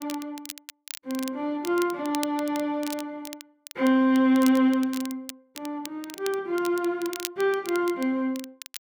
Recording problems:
crackling; vinyl, SNR 15 dB

